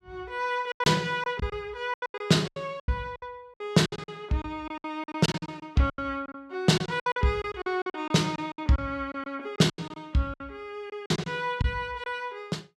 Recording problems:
packet loss; 15% of the sound replaced, filled with silence

